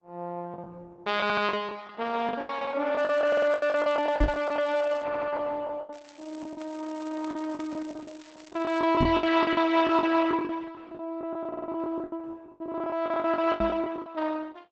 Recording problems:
codec artefacts; Opus, log-spectral distance 3 dB, nothing above 7.6 kHz
packet loss; 17% of the sound replaced, filled with the last packet
stutter; 4 times, first at 1 s
crackling; from 3 to 5 s and from 6 to 9 s; loose cable, SNR 26 dB
microphone bump; at 4 s, at 9 s and at 14 s; peak +4 dB vs average level

